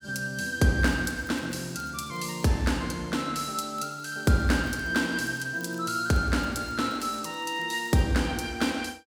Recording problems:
crackle; from 1 to 2.5 s and from 4 to 8 s; loose cable, SNR 26 dB

